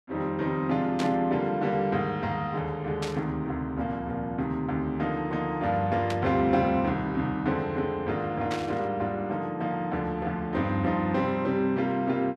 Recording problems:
burst of static; 4 times, first at 1 s; peak -4 dB vs average level

